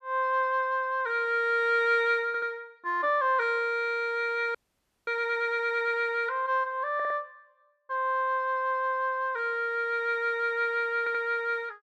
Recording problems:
stutter; at 2.5 s, at 7 s and at 11 s
audio freezing; at 4.5 s for 0.5 s

